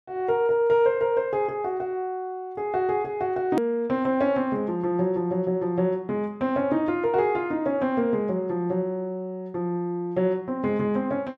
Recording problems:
edit click; at 3.5 s

